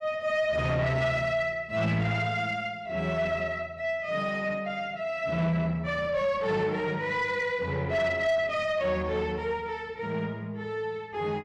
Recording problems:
distorted audio; soft clipping, signal-to-distortion ratio 12 dB

